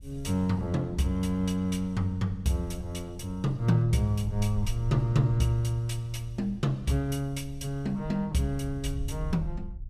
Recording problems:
wind noise; below 68 Hz, SNR 13 dB

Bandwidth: 15.5 kHz